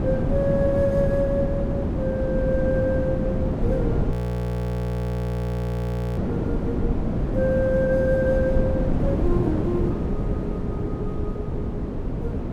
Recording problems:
wind on the microphone; below 300 Hz, SNR -1 dB
frozen audio; at 4 s for 2 s

